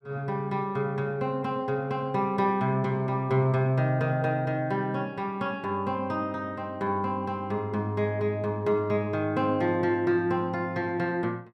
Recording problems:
none

